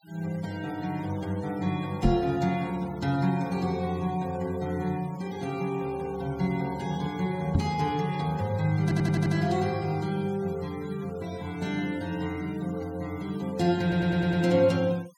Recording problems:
denoising artefacts; signal-to-artefact ratio 21 dB
knock on the microphone; at 2 s and at 7.5 s; peak +8 dB vs average level
audio stuttering; at 9 s and at 14 s

